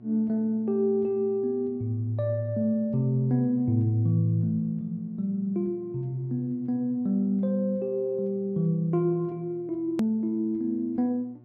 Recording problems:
electrical hum; 60 Hz, harmonics up to 720 Hz, SNR 24 dB
click at an edit; at 10 s

